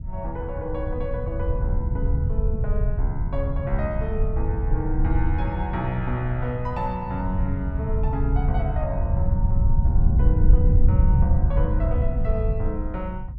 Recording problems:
low-frequency rumble; below 88 Hz, SNR -6 dB

